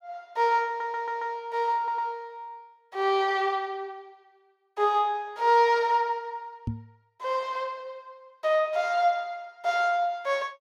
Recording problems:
audio stuttering; at 0.5 s and at 2 s
microphone bump; at 6.5 s; peak -1 dB vs average level

